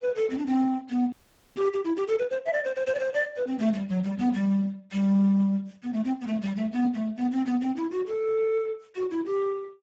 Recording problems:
codec artefacts; Speex, log-spectral distance 3 dB
audio freezing; at 1 s

